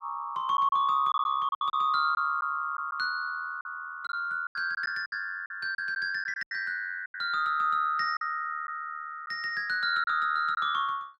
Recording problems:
packet loss; 8% of the sound replaced, filled with silence

